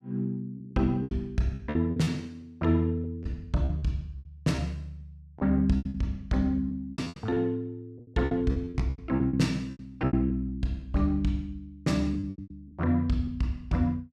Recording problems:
packet loss; 14% of the sound replaced, filled with repeated pitch periods

